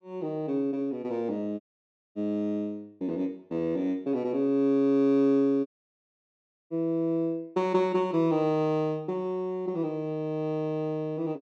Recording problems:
audio cutting out; at 1.5 s for 0.5 s and at 5.5 s for 1 s

